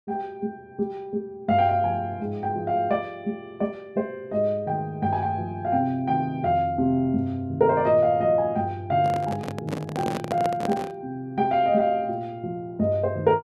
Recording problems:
microphone handling noise; from 9 to 11 s; peak -1 dB vs average level

